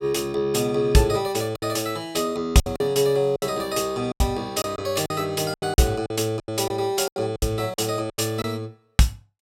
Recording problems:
packet loss; 10% of the sound replaced, filled with silence

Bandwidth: 16 kHz